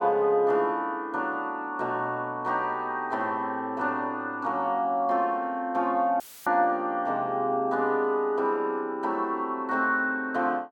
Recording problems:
audio cutting out; at 6 s; filled with static

